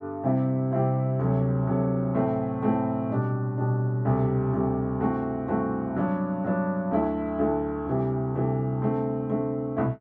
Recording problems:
none

